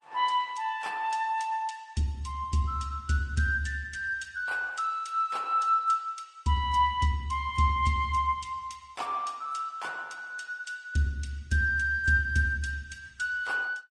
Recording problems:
lossy codec; MP3, then Opus, log-spectral distance 2 dB

